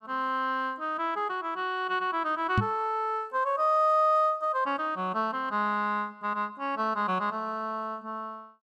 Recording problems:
knock on the microphone; at 2.5 s; peak +5 dB vs average level

